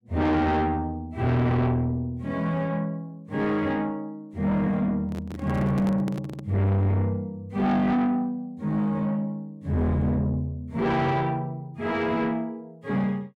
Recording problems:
distorted audio; soft clipping, signal-to-distortion ratio 7 dB
microphone handling noise; from 5 to 6.5 s; peak -2 dB vs average level

